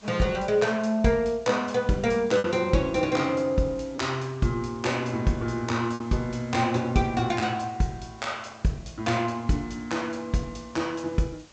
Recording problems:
low-pass filter; nothing above 8 kHz
background hiss; slope -2 dB per octave, SNR 27 dB
packet loss; 1.2% of the sound replaced, filled with repeated pitch periods

